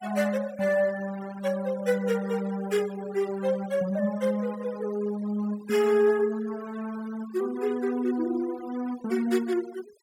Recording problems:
noise reduction artefacts; signal-to-artefact ratio 20 dB

